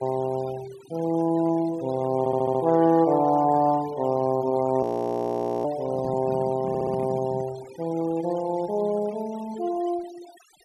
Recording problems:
noise reduction artefacts; signal-to-artefact ratio 20 dB
audio stuttering; at 2 s and at 6.5 s
frozen audio; at 5 s for 1 s
microphone handling noise; from 6 to 7.5 s; peak -5 dB vs average level

